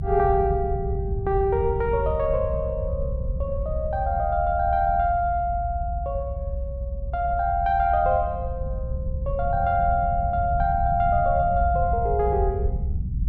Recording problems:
rumble; below 98 Hz, SNR 5 dB

